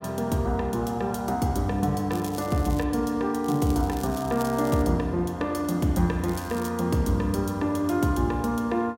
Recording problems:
crackling; at 2 s, from 3.5 to 5 s and at 6.5 s; loose cable, SNR 19 dB

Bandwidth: 16 kHz